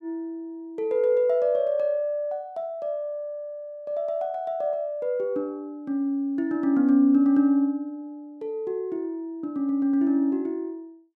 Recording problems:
none

